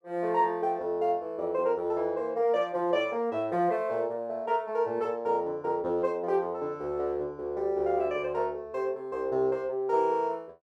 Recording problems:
none

